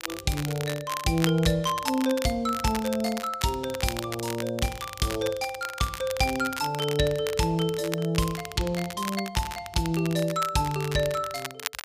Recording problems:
crackling; vinyl, SNR 10 dB

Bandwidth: 15 kHz